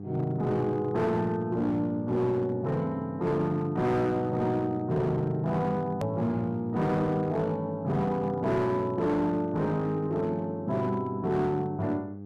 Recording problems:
distorted audio; hard clipping, signal-to-distortion ratio 12 dB
hum; 50 Hz, harmonics up to 800 Hz, SNR 13 dB
hard cut with a click; at 6 s

